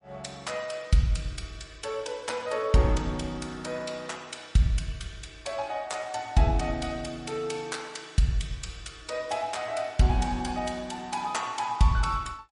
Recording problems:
codec artefacts; MP3, log-spectral distance 3 dB, nothing above 10.4 kHz

